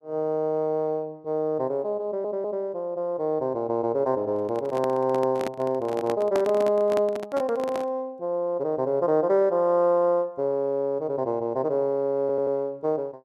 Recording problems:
stutter; at 2 s and at 12 s
handling noise; from 4.5 to 8 s; peak -1 dB vs average level

